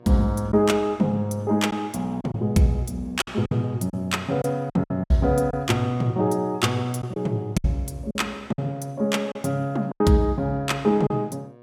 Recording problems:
hum; 60 Hz, harmonics up to 1.8 kHz, SNR 27 dB
lost packets; 6% of the sound replaced, filled with silence

